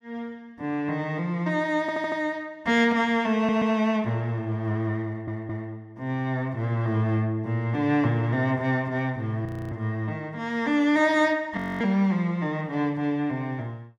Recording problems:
stutter; at 2 s, at 3.5 s and at 5 s
frozen audio; at 9.5 s and at 12 s

